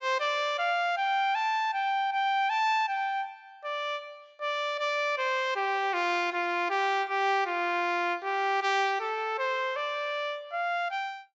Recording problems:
low-pass filter; nothing above 7.7 kHz

